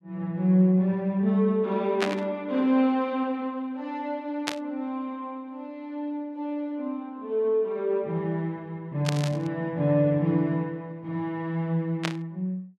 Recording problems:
static burst; 4 times, first at 2 s; peak +4 dB vs average level

